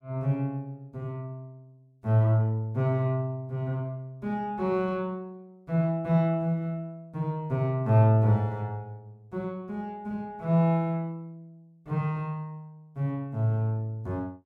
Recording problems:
none

